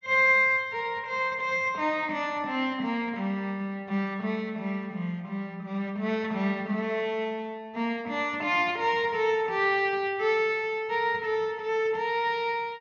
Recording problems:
low-pass filter; nothing above 6.7 kHz

